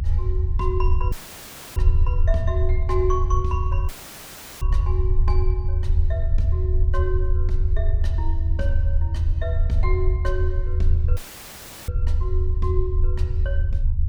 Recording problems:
low-frequency rumble; below 78 Hz, strongest tone 24 Hz, SNR -8 dB
dropout; at 1 s for 0.5 s, at 4 s for 0.5 s and at 11 s for 0.5 s; filled with static

